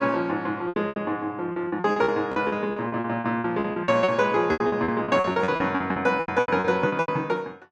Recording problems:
lost packets; 21% of the sound replaced, filled with repeated pitch periods

